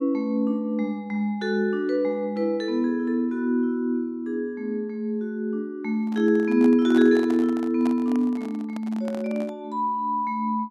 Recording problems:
handling noise; from 6 to 9.5 s; peak -7 dB vs average level

